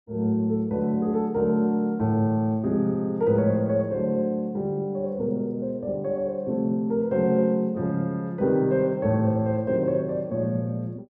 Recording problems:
none

